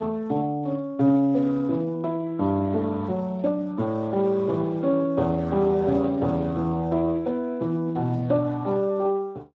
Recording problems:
lossy codec; Speex, log-spectral distance 2 dB

